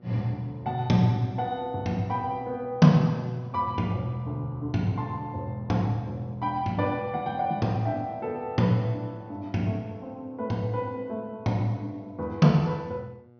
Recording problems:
low-pass filter; nothing above 6.3 kHz
hum; 60 Hz, harmonics up to 1.4 kHz, SNR 27 dB

